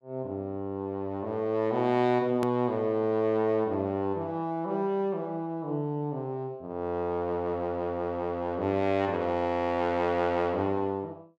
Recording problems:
click at an edit; at 2.5 s

